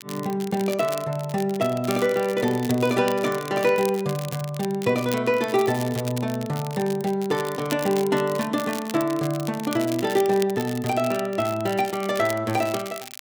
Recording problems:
crackling; vinyl, SNR 14 dB

